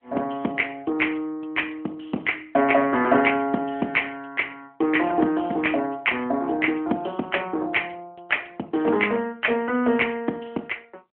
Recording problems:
telephone audio; 190 Hz to 3.3 kHz, AMR-NB

